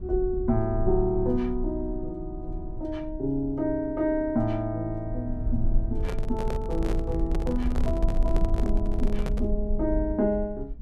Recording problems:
low-frequency rumble; below 52 Hz, strongest tone 24 Hz, SNR 4 dB
microphone handling noise; from 6 to 9.5 s; peak -1 dB vs average level

